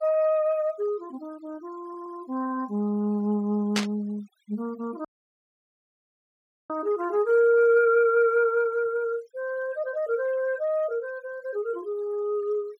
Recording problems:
denoising artefacts; signal-to-artefact ratio 27 dB
audio stuttering; at 2 s
burst of static; at 4 s; peak +3 dB vs average level
audio cutting out; at 5 s for 1.5 s

